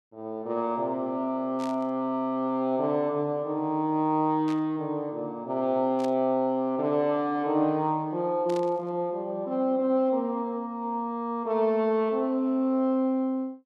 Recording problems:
burst of static; 4 times, first at 1.5 s; peak -12 dB vs average level

